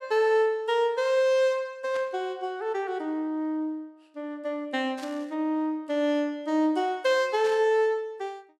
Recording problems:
static burst; at 2 s, at 5 s and at 7.5 s; peak -11 dB vs average level

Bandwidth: 14.5 kHz